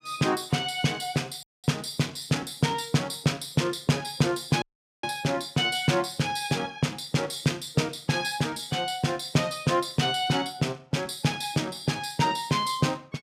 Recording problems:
dropout; at 1.5 s and at 4.5 s

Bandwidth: 15.5 kHz